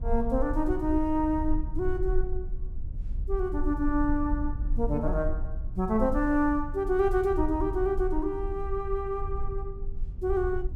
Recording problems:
low-frequency rumble; below 54 Hz, strongest tone 18 Hz, SNR 6 dB

